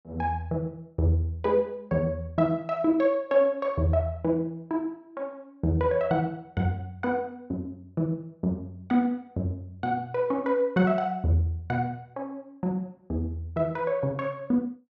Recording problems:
none

